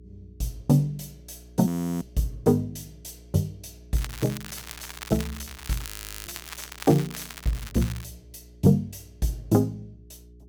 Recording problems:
electrical hum; 60 Hz, harmonics up to 420 Hz, SNR 24 dB
frozen audio; at 1.5 s and at 6 s
crackling; from 4 to 8 s; loose cable, SNR 12 dB

